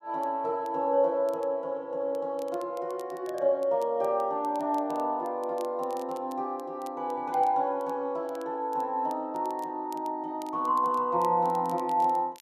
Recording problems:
crackling; vinyl, SNR 27 dB

